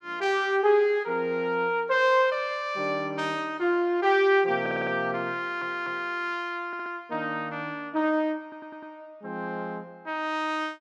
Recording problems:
audio stuttering; 4 times, first at 4.5 s

